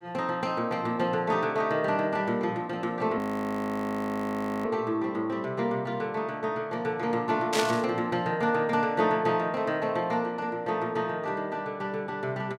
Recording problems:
audio freezing; at 3 s for 1.5 s
static burst; at 7.5 s; peak +3 dB vs average level

